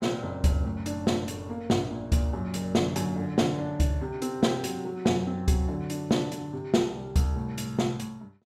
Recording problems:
none

